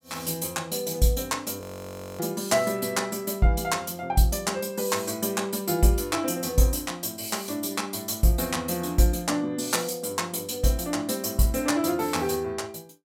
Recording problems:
frozen audio; at 1.5 s for 0.5 s

